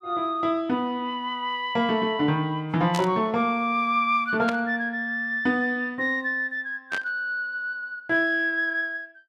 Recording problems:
burst of static; at 3 s, at 4.5 s and at 7 s; peak -3 dB vs average level

